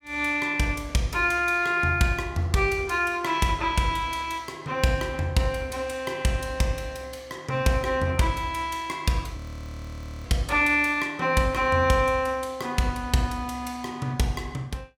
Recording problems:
audio freezing; at 9.5 s for 1 s

